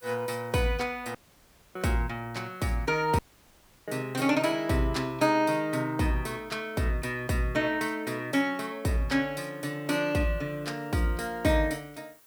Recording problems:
hiss; SNR 29 dB
audio cutting out; at 1 s for 0.5 s and at 3 s for 0.5 s

